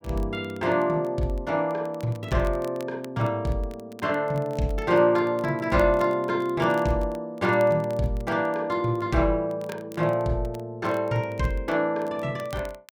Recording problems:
crackling; vinyl, SNR 26 dB

